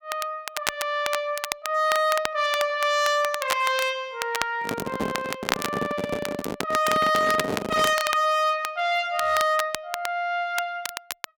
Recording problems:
distortion; hard clipping, signal-to-distortion ratio 12 dB
crackle; vinyl, SNR 8 dB
microphone handling noise; from 4.5 to 8 s; peak +1 dB vs average level

